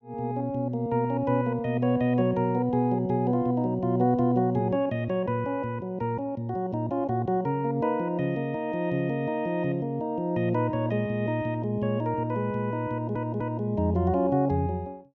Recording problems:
stutter; at 13 s

